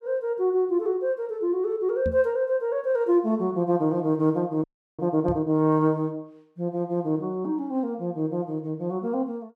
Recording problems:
knock on the microphone; at 2 s and at 5.5 s; peak -2 dB vs average level
audio freezing; at 4.5 s

